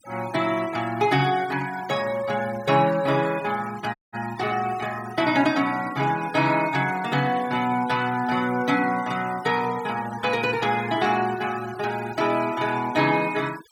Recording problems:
noise reduction artefacts; signal-to-artefact ratio 17 dB
dropout; at 4 s

